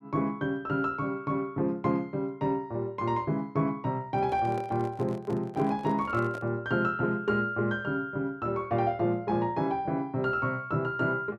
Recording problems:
microphone handling noise; from 4 to 6.5 s; peak -9 dB vs average level

